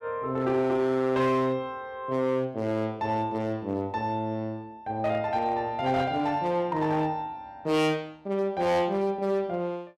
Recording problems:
distorted audio; hard clipping, signal-to-distortion ratio 12 dB

